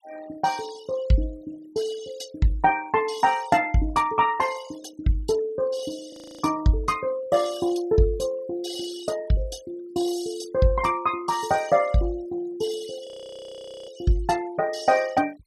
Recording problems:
denoising artefacts; signal-to-artefact ratio 20 dB
audio freezing; at 6 s and at 13 s for 1 s

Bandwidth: 14.5 kHz